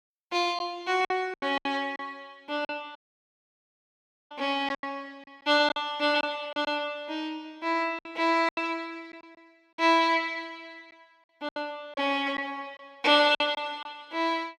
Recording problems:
packet loss; 8% of the sound replaced, filled with silence
audio cutting out; at 3 s for 1.5 s

